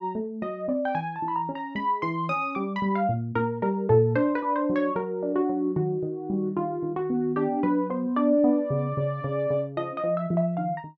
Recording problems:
none

